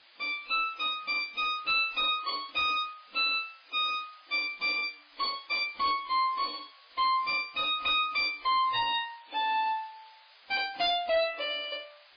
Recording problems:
lossy compression; MP3, then AAC, log-spectral distance 10 dB, nothing above 4.8 kHz
distortion; hard clipping, signal-to-distortion ratio 9 dB
hiss; SNR 26 dB

